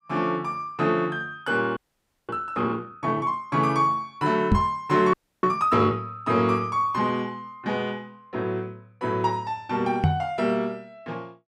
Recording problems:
audio freezing; at 2 s for 0.5 s and at 5 s
knock on the microphone; at 4.5 s and at 10 s; peak +8 dB vs average level

